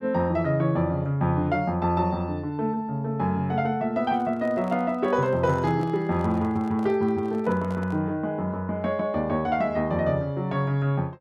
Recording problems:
handling noise; from 4 to 8 s; peak -12 dB vs average level

